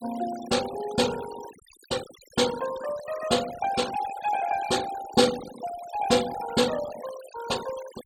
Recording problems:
denoising artefacts; signal-to-artefact ratio 12 dB

